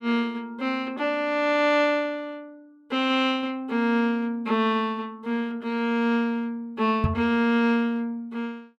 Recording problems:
microphone thump; at 7 s; peak +4 dB vs average level

